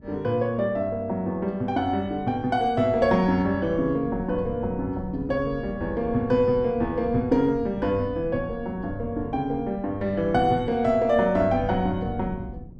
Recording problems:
wind on the microphone; below 210 Hz, SNR 14 dB

